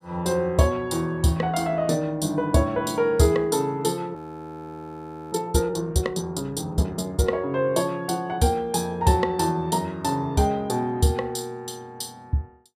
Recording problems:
frozen audio; at 4 s for 1 s

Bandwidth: 14.5 kHz